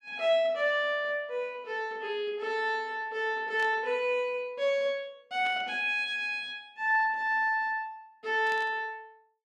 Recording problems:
static burst; at 3.5 s, at 5.5 s and at 8.5 s; peak -10 dB vs average level

